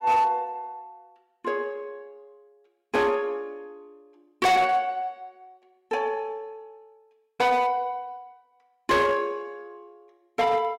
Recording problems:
distortion; hard clipping, uneven, signal-to-distortion ratio 8 dB

